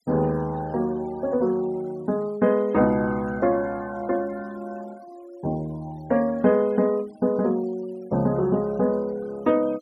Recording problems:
denoising artefacts; signal-to-artefact ratio 25 dB

